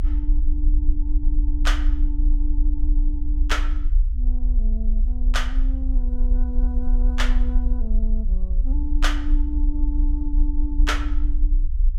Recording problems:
low-frequency rumble; below 44 Hz, strongest tone 30 Hz, SNR -8 dB

